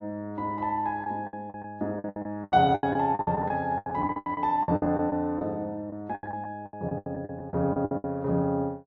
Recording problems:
lost packets; 19% of the sound replaced, filled with the last packet

